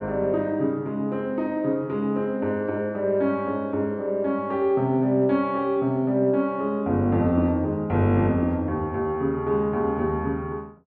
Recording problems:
none

